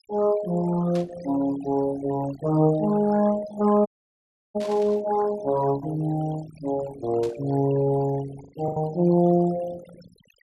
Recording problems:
noise reduction artefacts; signal-to-artefact ratio 18 dB
lost packets; 1.7% of the sound replaced, filled with the last packet
burst of static; at 1 s, at 4.5 s and at 7 s; peak -13 dB vs average level
audio cutting out; at 4 s for 0.5 s

